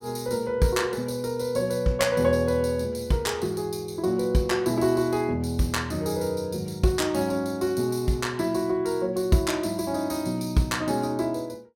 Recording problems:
none

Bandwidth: 17 kHz